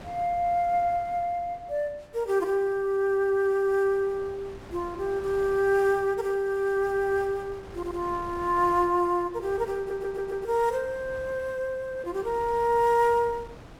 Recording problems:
wind noise; below 790 Hz, SNR 20 dB
stutter; at 7.5 s and at 10 s

